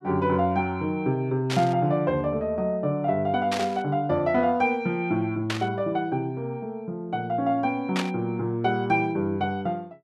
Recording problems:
burst of static; 4 times, first at 1.5 s; peak 0 dB vs average level

